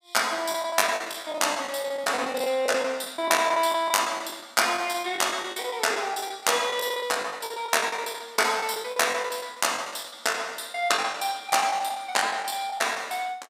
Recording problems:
packet loss; 17% of the sound replaced, filled with the last packet

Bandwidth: 15.5 kHz